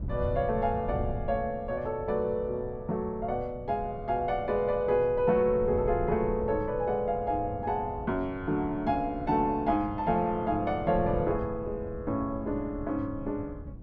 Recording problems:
wind noise; below 140 Hz, SNR 12 dB

